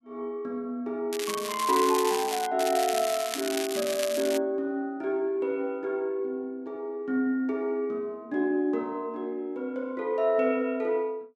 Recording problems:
crackling; from 1 to 2.5 s and from 2.5 to 4.5 s; loose cable, SNR 6 dB

